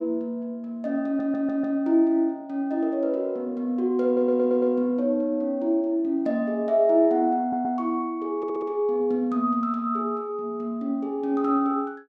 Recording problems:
audio stuttering; 4 times, first at 1 s

